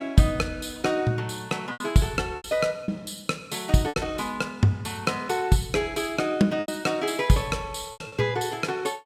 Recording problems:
lost packets; 5% of the sound replaced, filled with repeated pitch periods

